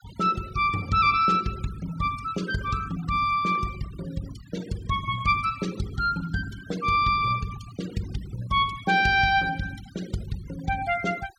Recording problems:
denoising artefacts; signal-to-artefact ratio 19 dB

